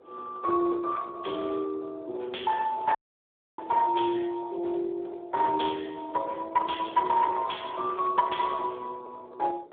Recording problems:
telephone audio; 300 Hz to 3.5 kHz, Speex
distortion; hard clipping, signal-to-distortion ratio 16 dB
wind noise; below 1.2 kHz, SNR 22 dB
audio cutting out; at 3 s for 0.5 s

